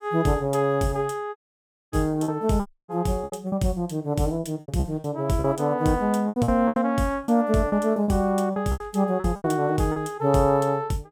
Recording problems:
packet loss; 11% of the sound replaced, filled with repeated pitch periods
audio cutting out; at 1.5 s for 0.5 s and at 2.5 s

